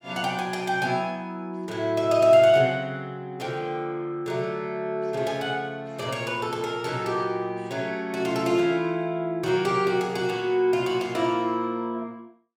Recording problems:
none

